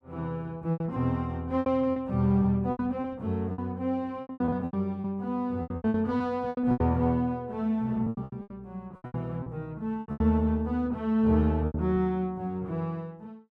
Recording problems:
packet loss; 14% of the sound replaced, filled with repeated pitch periods

